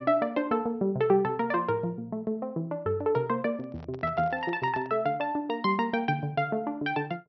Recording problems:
treble cut off; nothing above 5.8 kHz
microphone handling noise; from 3.5 to 5 s; peak -12 dB vs average level

